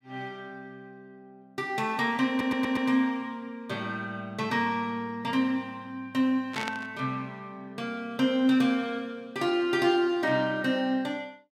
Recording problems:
stutter; at 2.5 s
burst of static; at 6.5 s; peak -2 dB vs average level

